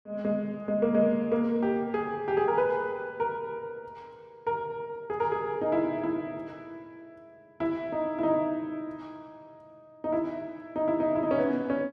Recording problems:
none

